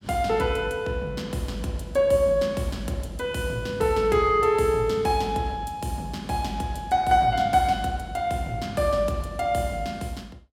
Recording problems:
none

